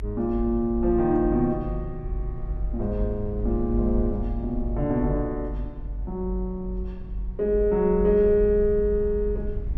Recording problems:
rumble; below 52 Hz, strongest tone 46 Hz, SNR 8 dB

